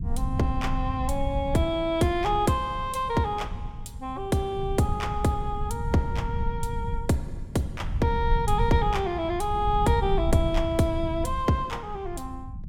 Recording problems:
low-frequency rumble; below 100 Hz, SNR 6 dB

